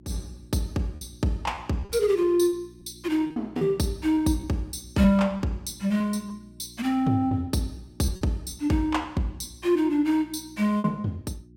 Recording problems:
hum; 60 Hz, harmonics up to 360 Hz, SNR 24 dB
lost packets; 6% of the sound replaced, filled with repeated pitch periods

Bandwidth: 16.5 kHz